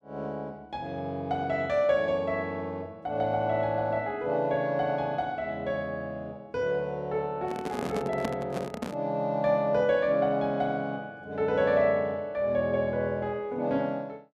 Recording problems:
handling noise; from 7.5 to 9 s; peak +1 dB vs average level

